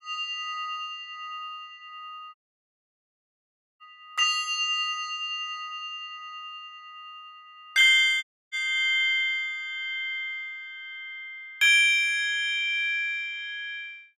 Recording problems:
dropout; at 2.5 s for 1.5 s and at 8 s

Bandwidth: 15.5 kHz